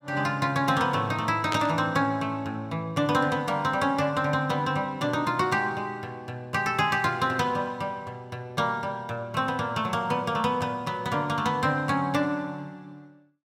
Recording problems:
static burst; at 1.5 s; peak -1 dB vs average level

